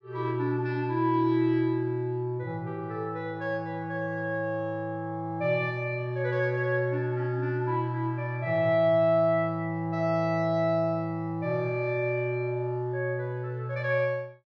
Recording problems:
none

